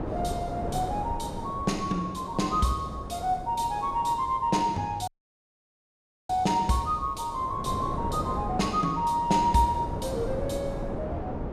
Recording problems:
wind on the microphone; below 560 Hz, SNR 8 dB
dropout; at 5 s for 1 s

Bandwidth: 15.5 kHz